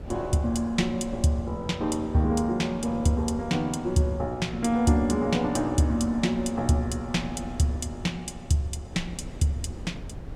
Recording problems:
wind on the microphone; below 230 Hz, SNR 16 dB

